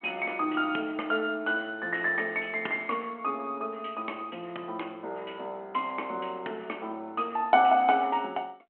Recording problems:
phone line; 190 Hz to 3.2 kHz, G.726

